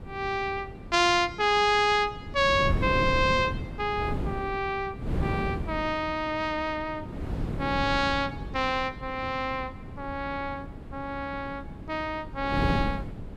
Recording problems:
wind on the microphone; below 270 Hz, SNR 8 dB

